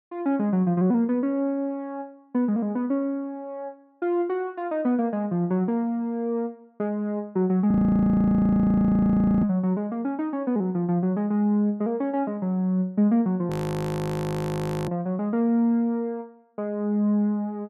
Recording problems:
audio freezing; at 7.5 s for 1.5 s and at 14 s for 1.5 s

